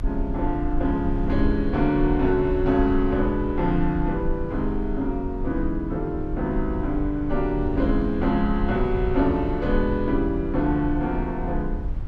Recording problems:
low-frequency rumble; below 66 Hz, SNR 7 dB

